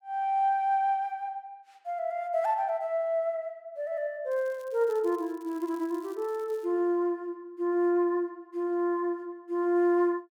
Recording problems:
crackle; from 4.5 to 6.5 s; loose cable, SNR 28 dB

